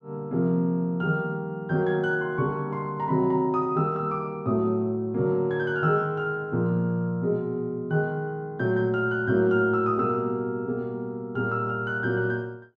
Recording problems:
none

